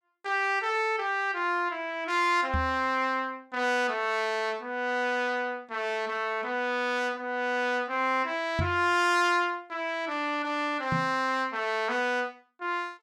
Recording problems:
microphone thump; at 2.5 s, at 8.5 s and at 11 s; peak +1 dB vs average level

